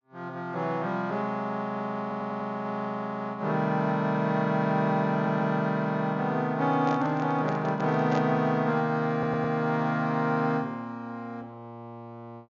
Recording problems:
treble cut off; nothing above 6.9 kHz
stutter; at 2 s, at 5 s and at 9 s
handling noise; from 6.5 to 8.5 s; peak -2 dB vs average level

